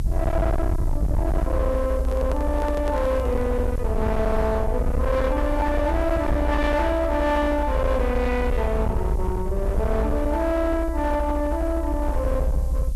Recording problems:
distortion; hard clipping, signal-to-distortion ratio 8 dB
hiss; SNR 27 dB
low-frequency rumble; below 70 Hz, SNR 2 dB
microphone handling noise; from 2 to 3.5 s; peak -2 dB vs average level

